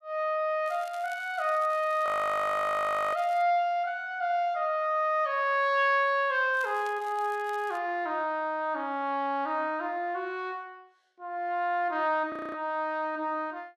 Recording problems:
crackle; from 0.5 to 3.5 s and from 6.5 to 8 s; loose cable, SNR 25 dB
audio freezing; at 2 s for 1 s and at 12 s

